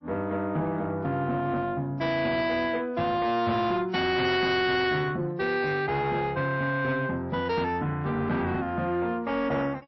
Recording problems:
lossy codec; MP3, log-spectral distance 2 dB, nothing above 4.9 kHz
distortion; soft clipping, signal-to-distortion ratio 10 dB

